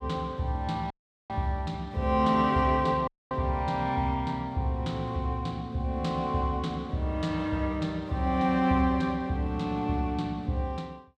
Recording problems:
dropout; at 1 s and at 3 s

